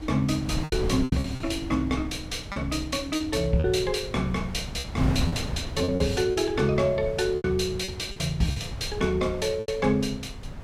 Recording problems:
wind noise; below 190 Hz, SNR 9 dB
lost packets; 8% of the sound replaced, filled with repeated pitch periods

